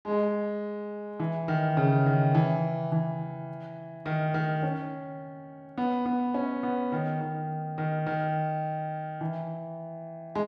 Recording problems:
none

